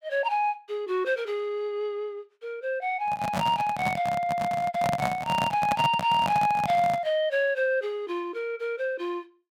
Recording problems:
microphone handling noise; from 3 to 7 s; peak +1 dB vs average level

